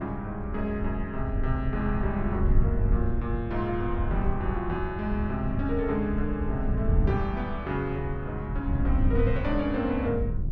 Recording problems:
wind on the microphone; below 100 Hz, SNR 0 dB

